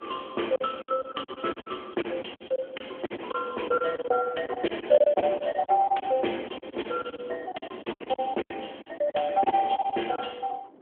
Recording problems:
phone line; 240 Hz to 3.3 kHz, AMR-NB
wind noise; below 580 Hz, SNR 20 dB
packet loss; 16% of the sound replaced, filled with silence

